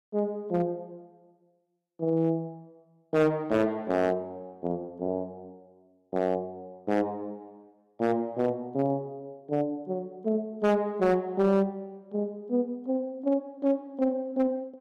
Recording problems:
distortion; hard clipping, signal-to-distortion ratio 11 dB

